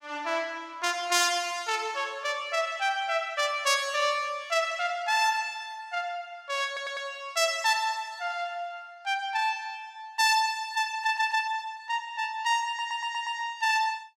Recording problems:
stutter; at 6.5 s, at 11 s and at 13 s

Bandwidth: 16.5 kHz